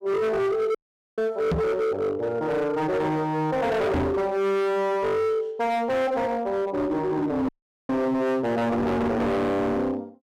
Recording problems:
distorted audio; hard clipping, signal-to-distortion ratio 7 dB
audio cutting out; at 1 s and at 7.5 s
microphone bump; at 1.5 s, at 4 s and at 8 s; peak +5 dB vs average level

